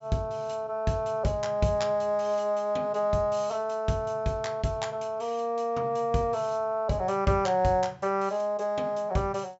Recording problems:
treble missing; nothing above 8 kHz

